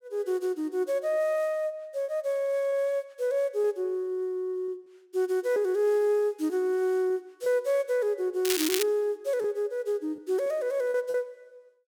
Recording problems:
packet loss; 3% of the sound replaced, filled with repeated pitch periods
crackling; at 8.5 s; loose cable, SNR 3 dB

